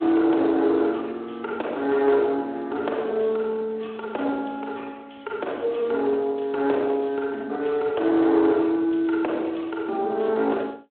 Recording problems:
telephone audio; 280 Hz to 3.9 kHz, Speex
distorted audio; soft clipping, signal-to-distortion ratio 13 dB

